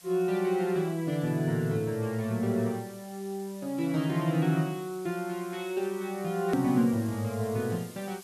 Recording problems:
hiss; slope 0 dB per octave, SNR 20 dB
edit click; at 6.5 s

